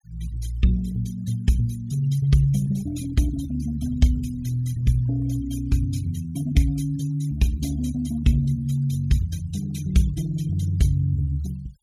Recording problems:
denoising artefacts; signal-to-artefact ratio 20 dB

